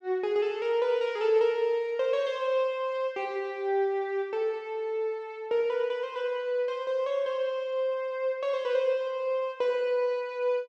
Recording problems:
none

